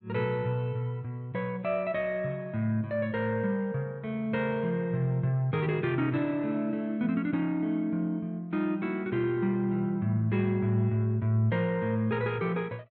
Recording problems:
none

